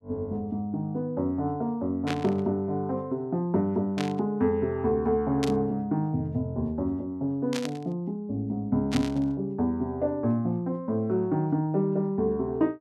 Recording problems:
static burst; 5 times, first at 2 s; peak -1 dB vs average level

